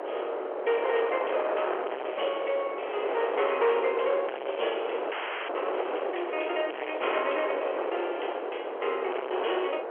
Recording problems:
telephone audio; 370 Hz to 3.2 kHz, G.711
distorted audio; hard clipping, signal-to-distortion ratio 7 dB
wind on the microphone; below 920 Hz, SNR 3 dB
audio freezing; at 5 s

